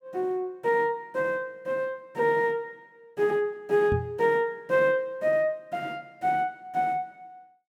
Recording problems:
microphone bump; at 4 s; peak +1 dB vs average level

